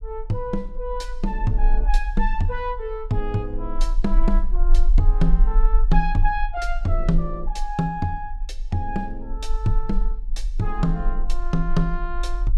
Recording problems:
low-frequency rumble; below 36 Hz, strongest tone 22 Hz, SNR -1 dB

